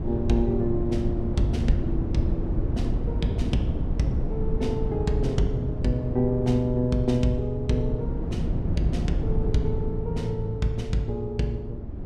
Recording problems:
wind noise; below 160 Hz, SNR 2 dB

